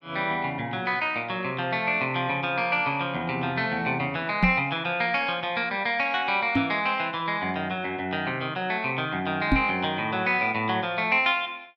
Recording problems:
knock on the microphone; at 4.5 s, at 6.5 s and at 9.5 s; peak +6 dB vs average level

